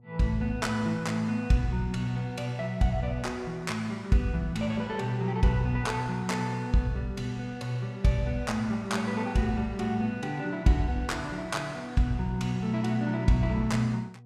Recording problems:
electrical hum; 60 Hz, harmonics up to 720 Hz, SNR 23 dB

